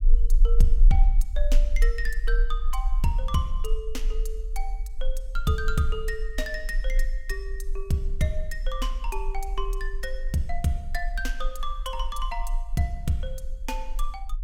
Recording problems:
low-frequency rumble; below 36 Hz, strongest tone 28 Hz, SNR -2 dB

